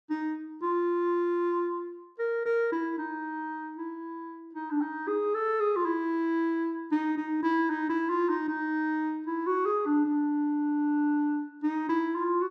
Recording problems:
none

